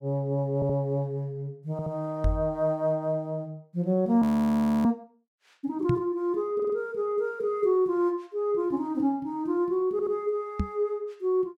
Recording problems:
stutter; 4 times, first at 0.5 s
microphone thump; at 2 s, at 6 s and at 11 s; peak +5 dB vs average level
audio freezing; at 4 s for 0.5 s

